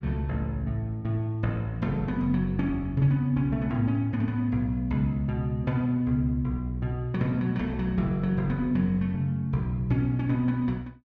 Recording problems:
none

